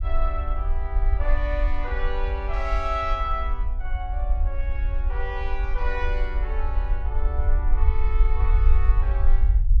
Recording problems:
low-frequency rumble; below 50 Hz, strongest tone 20 Hz, SNR -6 dB

